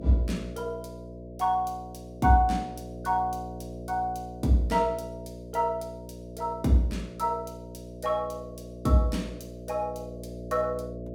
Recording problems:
hum; 60 Hz, harmonics up to 660 Hz, SNR 13 dB

